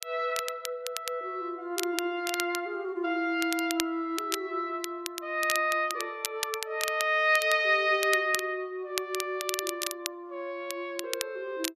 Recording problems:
crackle; vinyl, SNR 7 dB

